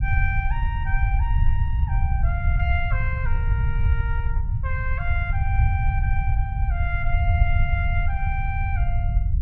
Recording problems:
low-frequency rumble; below 88 Hz, SNR -7 dB

